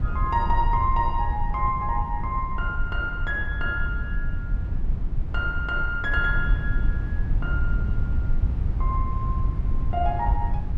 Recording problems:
low-frequency rumble; below 76 Hz, SNR 0 dB

